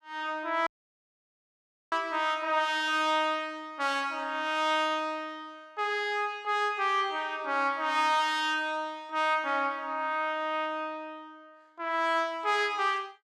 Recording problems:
dropout; at 0.5 s for 1.5 s

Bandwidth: 14.5 kHz